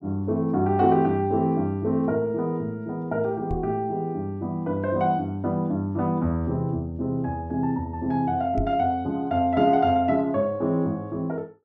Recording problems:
microphone thump; at 3.5 s and at 8.5 s; peak -1 dB vs average level

